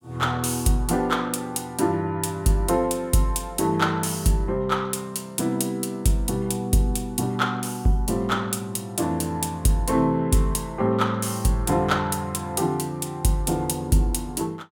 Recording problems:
none

